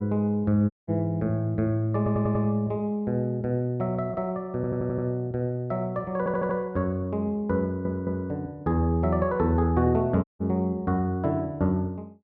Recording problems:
low-pass filter; nothing above 6.2 kHz
audio cutting out; at 0.5 s and at 10 s
stutter; 4 times, first at 2 s

